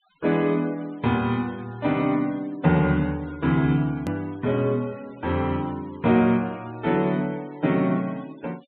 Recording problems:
treble missing; nothing above 4 kHz
noise reduction artefacts; signal-to-artefact ratio 25 dB
edit click; at 4 s

